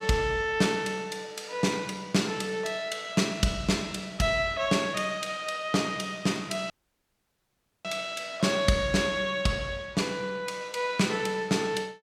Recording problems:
dropout; at 6.5 s for 1 s

